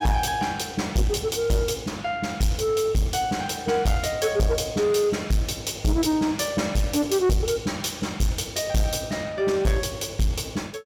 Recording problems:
distorted audio; soft clipping, signal-to-distortion ratio 8 dB

